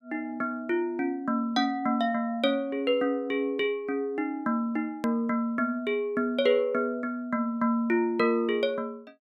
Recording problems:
hard cut with a click; at 5 s

